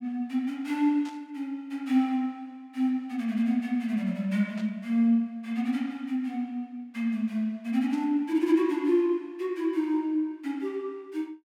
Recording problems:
burst of static; at 1 s, at 4.5 s and at 8 s; peak -14 dB vs average level

